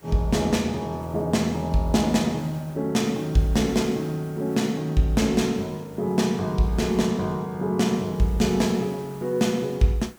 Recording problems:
background hiss; SNR 25 dB

